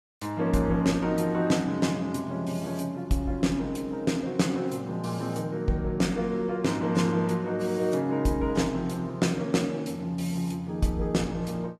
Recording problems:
codec artefacts; AAC, log-spectral distance 2 dB, nothing above 14.7 kHz

